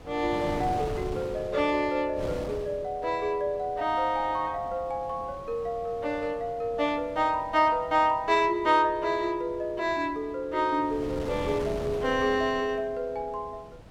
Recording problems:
wind noise; below 640 Hz, SNR 14 dB

